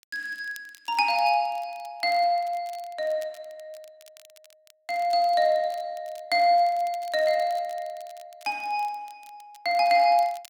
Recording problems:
crackling; vinyl, SNR 27 dB

